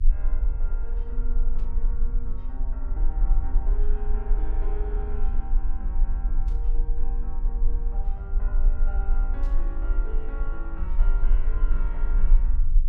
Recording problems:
hum; 60 Hz, harmonics up to 480 Hz, SNR 16 dB
rumble; below 36 Hz, strongest tone 18 Hz, SNR -15 dB
burst of static; at 1.5 s, at 6.5 s and at 9.5 s; peak -10 dB vs average level

